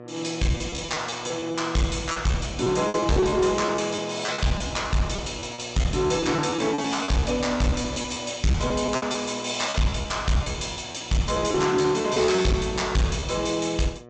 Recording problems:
treble missing; nothing above 8 kHz
distorted audio; hard clipping, uneven, signal-to-distortion ratio 9 dB
hum; 60 Hz, harmonics up to 1.9 kHz, SNR 17 dB
packet loss; 12% of the sound replaced, filled with repeated pitch periods

